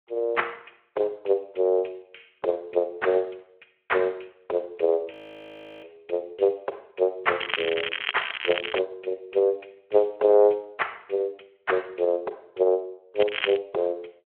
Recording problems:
phone line; 340 Hz to 3.5 kHz, Speex
audio freezing; at 5 s for 0.5 s
crackling; from 7.5 to 9 s and at 13 s; loose cable, SNR 4 dB

